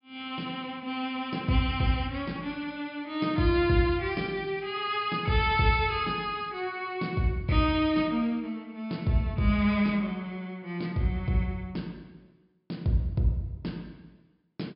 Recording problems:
treble cut off; nothing above 5.5 kHz

